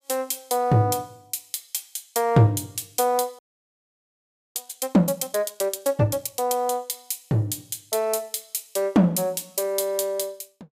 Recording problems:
audio freezing; at 3.5 s for 1 s

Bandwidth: 15.5 kHz